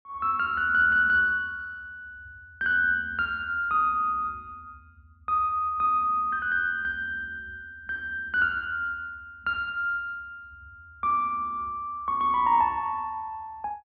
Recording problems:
none

